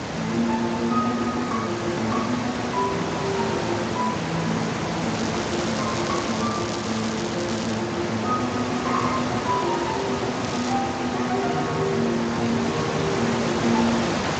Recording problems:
lossy compression; Speex, log-spectral distance 12 dB
background hiss; slope -5 dB per octave, SNR 2 dB
crackling; from 5 to 8 s and at 10 s; loose cable, SNR 11 dB

